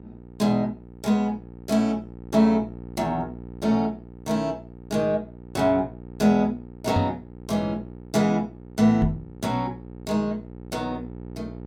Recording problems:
electrical hum; 60 Hz, harmonics up to 960 Hz, SNR 16 dB
microphone thump; at 7 s and at 9 s; peak +5 dB vs average level

